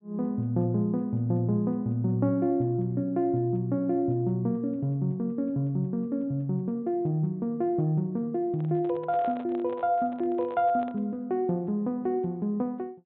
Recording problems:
low-pass filter; nothing above 4 kHz
microphone handling noise; from 8.5 to 11 s; peak -9 dB vs average level

